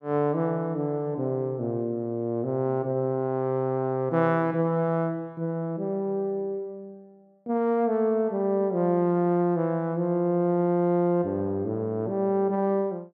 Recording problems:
none

